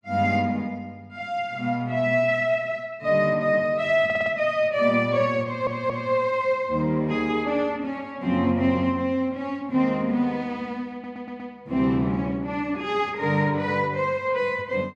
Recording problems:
stutter; at 4 s, at 5.5 s and at 11 s

